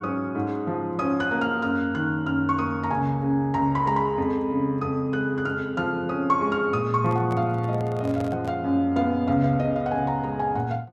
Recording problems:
handling noise; from 7 to 8.5 s; peak -8 dB vs average level

